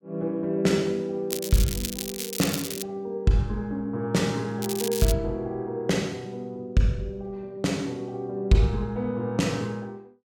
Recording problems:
crackle; from 1.5 to 3 s and at 4.5 s; loose cable, SNR 5 dB

